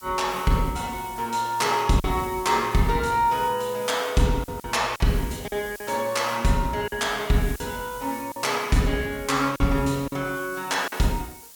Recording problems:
background hiss; SNR 18 dB
lost packets; 4% of the sound replaced, filled with silence

